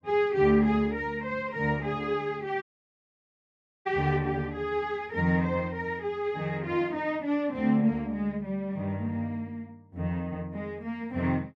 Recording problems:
audio cutting out; at 2.5 s for 1 s

